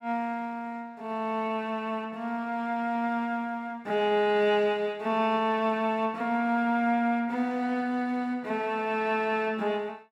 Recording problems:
none

